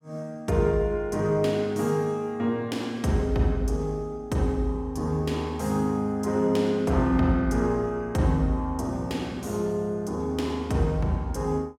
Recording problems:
none

